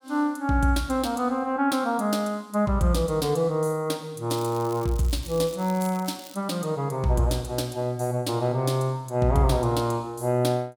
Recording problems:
crackling; from 4.5 to 6.5 s; loose cable, SNR 19 dB

